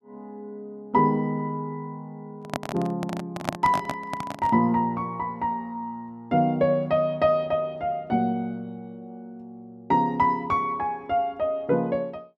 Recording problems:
microphone handling noise; from 2.5 to 4.5 s; peak +3 dB vs average level

